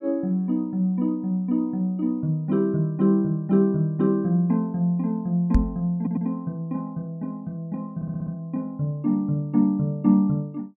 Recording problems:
knock on the microphone; at 5.5 s; peak +7 dB vs average level
audio stuttering; at 6 s and at 8 s

